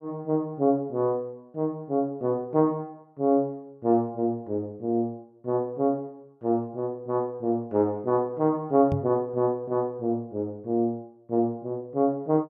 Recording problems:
microphone bump; at 9 s; peak +2 dB vs average level

